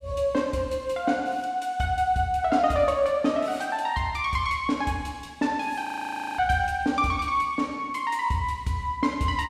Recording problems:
audio freezing; at 6 s for 0.5 s

